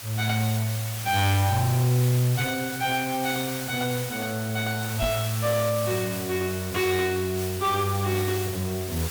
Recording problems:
distorted audio; soft clipping, signal-to-distortion ratio 10 dB
hiss; slope 0 dB per octave, SNR 8 dB
microphone bump; at 5 s; peak 0 dB vs average level

